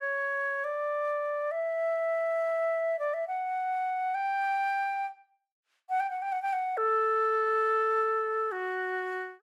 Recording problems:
none

